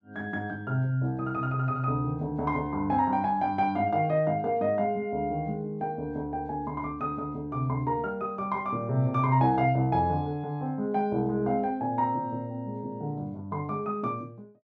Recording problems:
none

